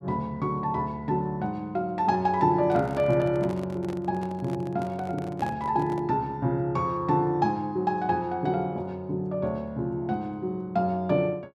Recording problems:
handling noise; from 2.5 to 6 s; peak -8 dB vs average level

